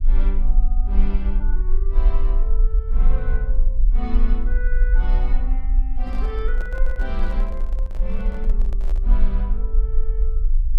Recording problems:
low-frequency rumble; below 40 Hz, strongest tone 22 Hz, SNR -12 dB
microphone handling noise; from 6 to 9 s; peak -2 dB vs average level

